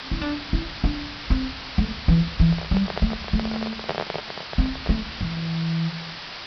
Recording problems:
low-pass filter; nothing above 5.5 kHz
hiss; SNR 8 dB
handling noise; from 2.5 to 5 s; peak +3 dB vs average level

